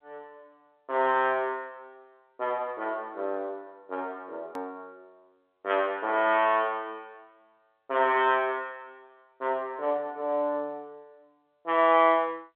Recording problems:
telephone audio; 280 Hz to 3.4 kHz, G.711
edit click; at 4.5 s

